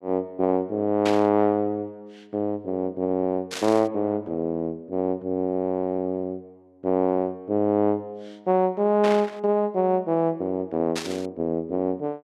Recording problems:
static burst; 4 times, first at 1 s; peak -1 dB vs average level

